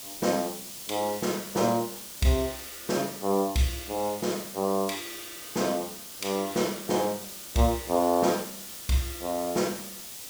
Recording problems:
hiss; SNR 10 dB

